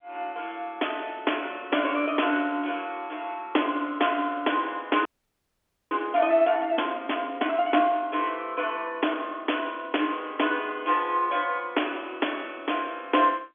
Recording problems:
phone line; 260 Hz to 3.5 kHz, G.711
audio freezing; at 5 s for 1 s

